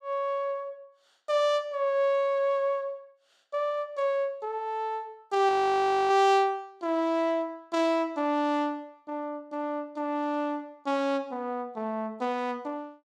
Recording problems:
frozen audio; at 5.5 s for 0.5 s

